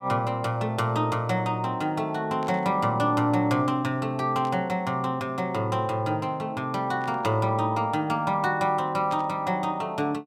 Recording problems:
static burst; 4 times, first at 2.5 s; peak -13 dB vs average level

